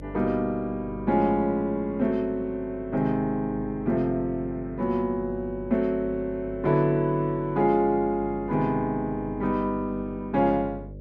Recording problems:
electrical hum; 50 Hz, harmonics up to 600 Hz, SNR 16 dB

